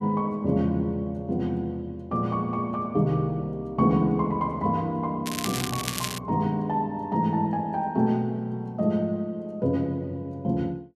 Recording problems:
crackle; at 5.5 s; loose cable, SNR 6 dB

